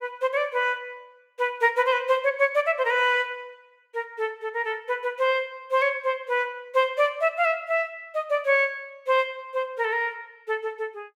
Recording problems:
none

